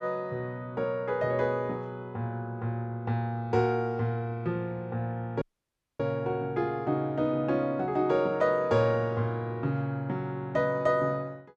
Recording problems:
dropout; at 5.5 s for 0.5 s

